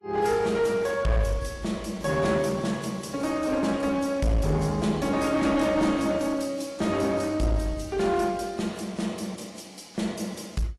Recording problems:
codec artefacts; AAC, log-spectral distance 4 dB, nothing above 12 kHz
distorted audio; hard clipping, uneven, signal-to-distortion ratio 10 dB

